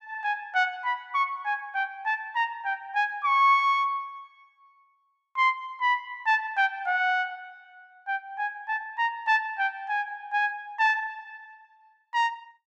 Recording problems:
none

